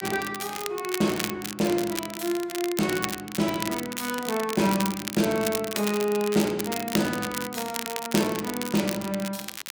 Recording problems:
crackling; vinyl, SNR 6 dB

